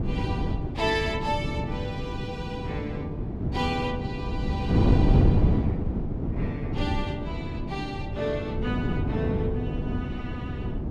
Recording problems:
wind noise; below 250 Hz, SNR -4 dB

